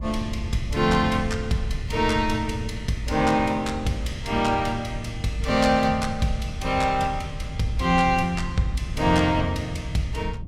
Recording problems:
low-frequency rumble; below 110 Hz, SNR 9 dB

